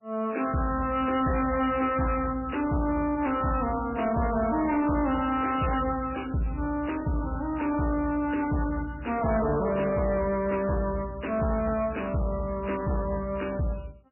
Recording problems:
lossy codec; MP3, log-spectral distance 5 dB, nothing above 2.8 kHz
distortion; soft clipping, signal-to-distortion ratio 12 dB

